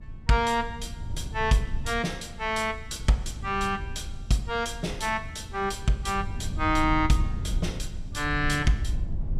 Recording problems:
wind on the microphone; below 90 Hz, SNR 8 dB

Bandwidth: 14 kHz